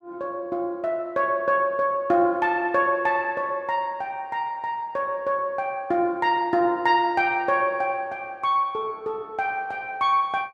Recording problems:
none

